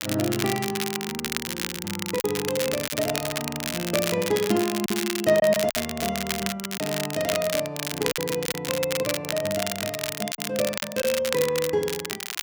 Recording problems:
crackle; vinyl, SNR 3 dB
packet loss; 4% of the sound replaced, filled with silence

